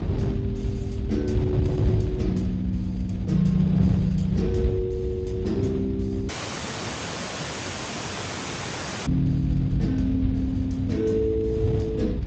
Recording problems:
lossy codec; Speex, log-spectral distance 5 dB, nothing above 17.7 kHz
hum; 50 Hz, harmonics up to 700 Hz, SNR 11 dB
rumble; below 84 Hz, SNR 9 dB
wind on the microphone; below 200 Hz, SNR 4 dB
dropout; at 6.5 s for 3 s

